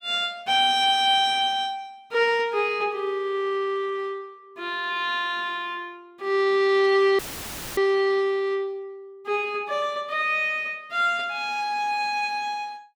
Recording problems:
audio cutting out; at 7 s for 0.5 s; filled with static

